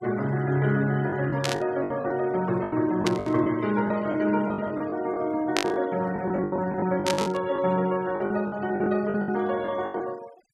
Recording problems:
noise reduction artefacts; signal-to-artefact ratio 21 dB
packet loss; 13% of the sound replaced, filled with the last packet
burst of static; 4 times, first at 1.5 s; peak +3 dB vs average level

